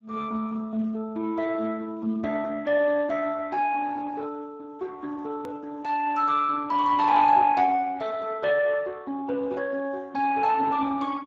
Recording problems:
codec artefacts; Speex, log-spectral distance 3 dB
click at an edit; at 5.5 s

